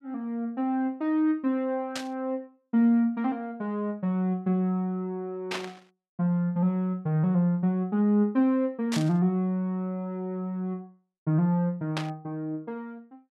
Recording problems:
burst of static; 4 times, first at 2 s; peak -1 dB vs average level

